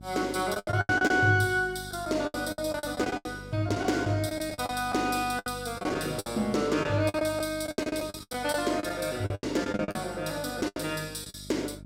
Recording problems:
hum; 50 Hz, harmonics up to 650 Hz, SNR 17 dB
packet loss; 16% of the sound replaced, filled with the last packet

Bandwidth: 16 kHz